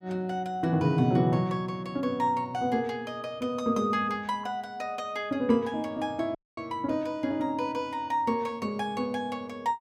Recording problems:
audio cutting out; at 6.5 s

